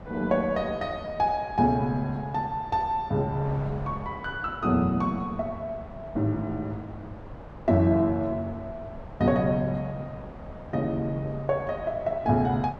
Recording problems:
wind noise; below 660 Hz, SNR 15 dB

